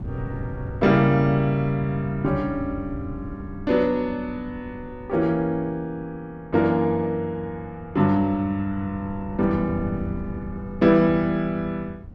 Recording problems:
wind noise; below 160 Hz, SNR 15 dB

